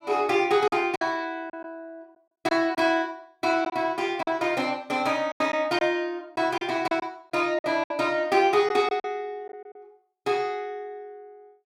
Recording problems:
lost packets; 7% of the sound replaced, filled with silence

